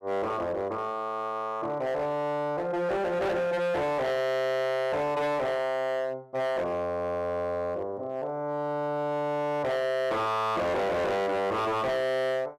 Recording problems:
distorted audio; hard clipping, signal-to-distortion ratio 7 dB

